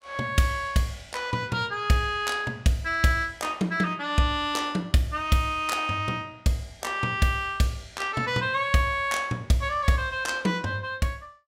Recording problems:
none

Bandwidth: 16.5 kHz